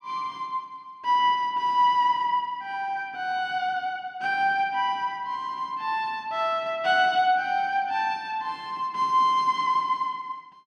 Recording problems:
none

